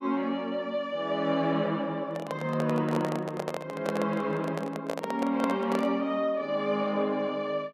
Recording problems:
microphone handling noise; from 2 to 6 s; peak +2 dB vs average level

